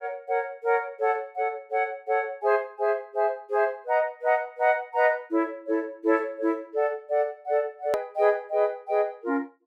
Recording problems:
hard cut with a click; at 8 s

